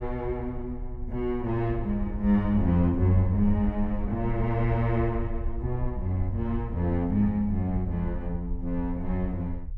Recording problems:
rumble; below 64 Hz, SNR 9 dB

